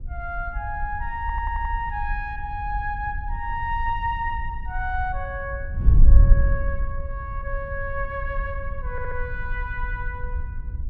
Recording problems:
wind on the microphone; below 58 Hz, SNR -3 dB
stutter; at 1 s and at 9 s

